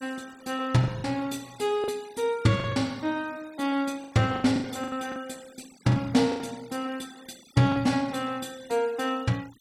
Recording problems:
denoising artefacts; signal-to-artefact ratio 23 dB
packet loss; 8% of the sound replaced, filled with the last packet

